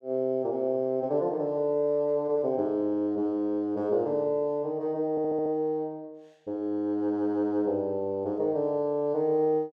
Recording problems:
audio stuttering; at 5 s

